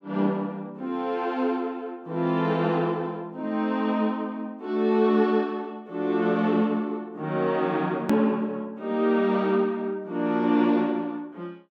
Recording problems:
edit click; at 8 s

